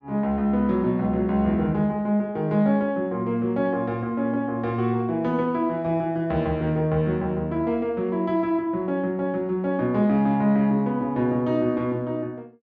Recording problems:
none

